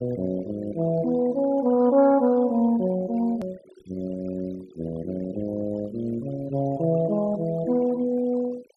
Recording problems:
noise reduction artefacts; signal-to-artefact ratio 20 dB
edit click; at 3.5 s

